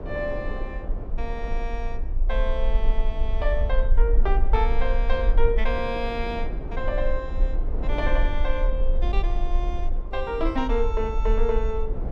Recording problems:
rumble; below 42 Hz, strongest tone 20 Hz, SNR -2 dB
wind noise; below 510 Hz, SNR 9 dB

